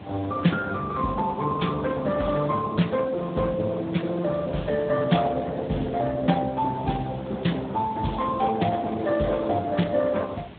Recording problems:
treble missing; nothing above 3.9 kHz
lossy codec; Opus, then Speex, log-spectral distance 4 dB
background hiss; SNR 27 dB
wind on the microphone; below 430 Hz, SNR 17 dB

